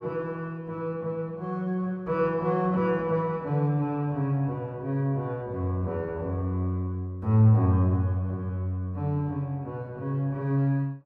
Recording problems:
none

